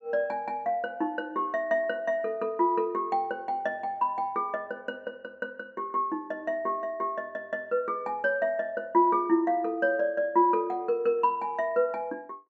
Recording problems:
treble missing; nothing above 8 kHz

